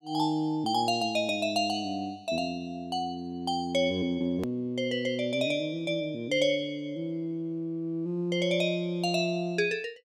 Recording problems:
hard cut with a click; at 4.5 s

